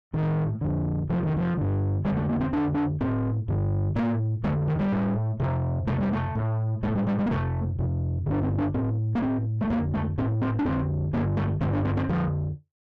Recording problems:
distortion; soft clipping, signal-to-distortion ratio 5 dB

